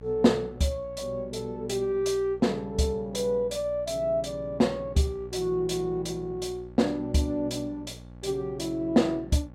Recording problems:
hum; 60 Hz, harmonics up to 900 Hz, SNR 18 dB

